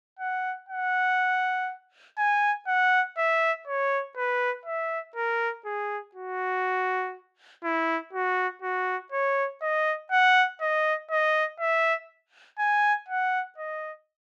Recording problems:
none

